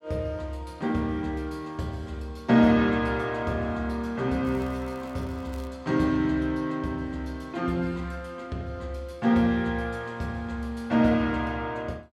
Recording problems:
crackle; from 4.5 to 5.5 s; loose cable, SNR 29 dB

